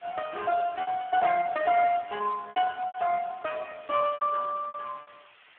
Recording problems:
telephone audio; 320 Hz to 2.9 kHz, Speex
background hiss; SNR 27 dB
packet loss; 11% of the sound replaced, filled with repeated pitch periods

